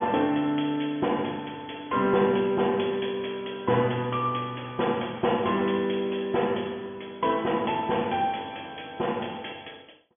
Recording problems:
low-pass filter; nothing above 3.4 kHz

